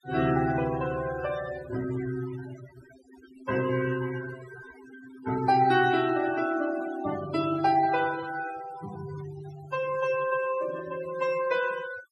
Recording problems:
noise reduction artefacts; signal-to-artefact ratio 13 dB

